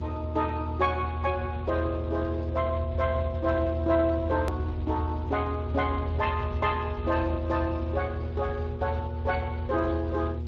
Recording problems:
lossy compression; MP3, then Speex, log-spectral distance 2 dB, nothing above 13.1 kHz
hum; 60 Hz, harmonics up to 960 Hz, SNR 11 dB
rumble; below 82 Hz, strongest tone 80 Hz, SNR 4 dB
hard cut with a click; at 4.5 s

